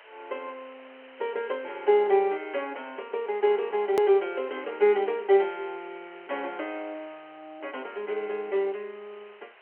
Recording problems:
telephone audio; 340 Hz to 3.1 kHz, G.711
background hiss; SNR 24 dB
hard cut with a click; at 4 s

